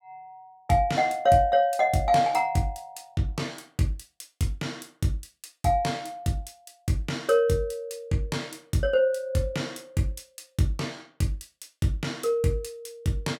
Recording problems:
none

